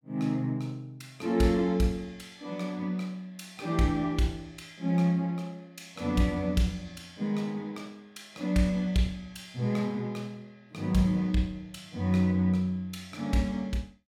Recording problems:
none

